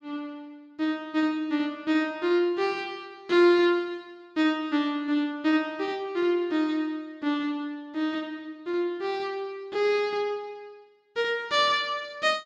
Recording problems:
none

